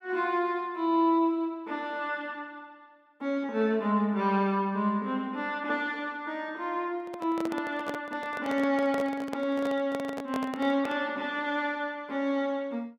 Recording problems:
handling noise; from 7 to 11 s; peak -3 dB vs average level

